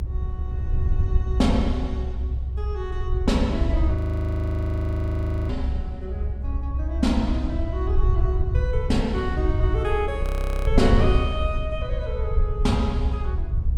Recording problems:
low-frequency rumble; below 82 Hz, SNR -2 dB
wind noise; below 210 Hz, SNR 14 dB
frozen audio; at 4 s for 1.5 s and at 10 s

